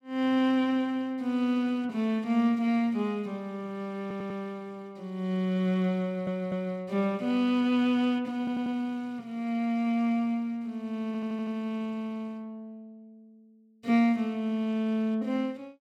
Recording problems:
audio stuttering; 4 times, first at 4 s

